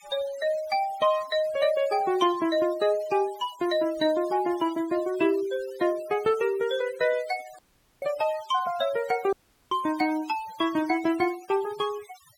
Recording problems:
noise reduction artefacts; signal-to-artefact ratio 18 dB
audio cutting out; at 7.5 s and at 9.5 s

